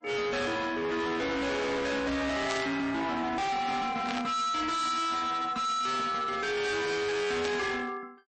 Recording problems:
codec artefacts; MP3, log-spectral distance 3 dB, nothing above 8.2 kHz
distortion; hard clipping, uneven, signal-to-distortion ratio 6 dB
burst of static; at 2.5 s, at 4 s and at 7.5 s; peak -1 dB vs average level

